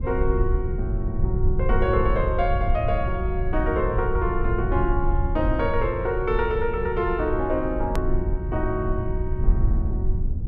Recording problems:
rumble; below 78 Hz, SNR 1 dB
edit click; at 8 s

